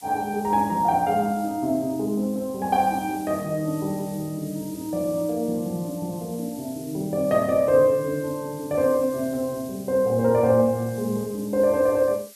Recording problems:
background hiss; slope +5 dB per octave, SNR 20 dB

